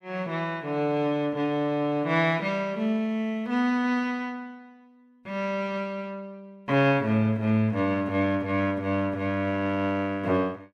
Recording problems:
none

